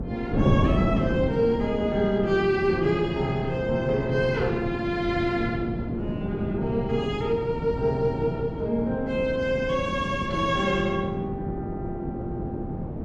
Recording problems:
wind noise; below 320 Hz, SNR 4 dB

